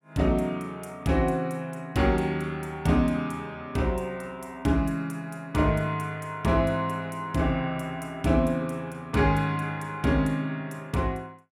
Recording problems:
none

